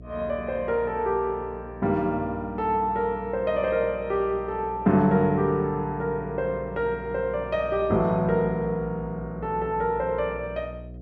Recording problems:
hum; 60 Hz, harmonics up to 720 Hz, SNR 16 dB

